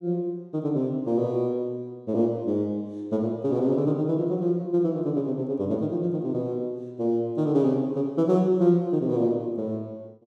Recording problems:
none

